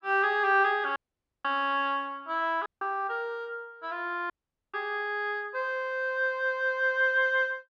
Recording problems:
dropout; at 1 s, at 2.5 s and at 4.5 s

